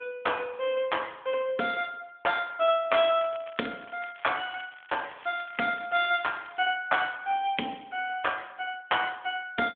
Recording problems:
phone line; 240 Hz to 3.6 kHz, AMR-NB
crackle; from 3 to 6.5 s; loose cable, SNR 21 dB

